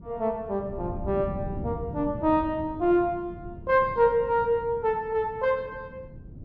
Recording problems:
wind on the microphone; below 210 Hz, SNR 13 dB

